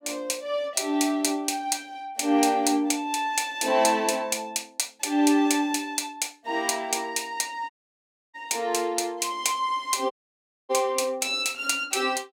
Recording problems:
audio cutting out; at 7.5 s for 0.5 s and at 10 s for 0.5 s

